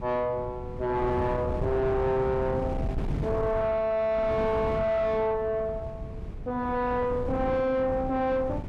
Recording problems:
distortion; soft clipping, signal-to-distortion ratio 7 dB
wind on the microphone; below 280 Hz, SNR 7 dB

